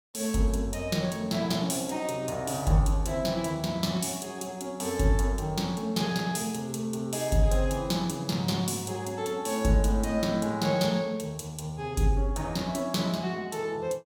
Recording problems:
none

